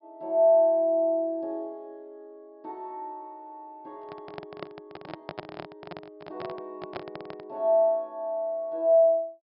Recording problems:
treble missing; nothing above 5.5 kHz
handling noise; from 4 to 7.5 s; peak -8 dB vs average level

